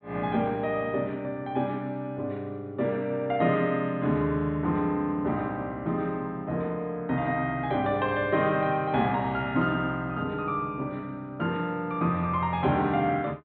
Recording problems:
treble cut off; nothing above 4.1 kHz

